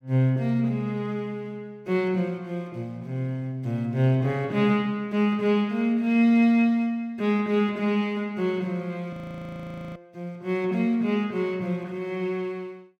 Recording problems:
audio freezing; at 9 s for 1 s

